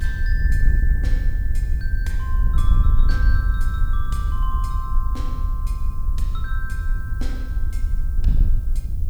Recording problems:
hiss; SNR 19 dB
low-frequency rumble; below 36 Hz, strongest tone 24 Hz, SNR -2 dB
wind on the microphone; below 58 Hz, SNR -12 dB

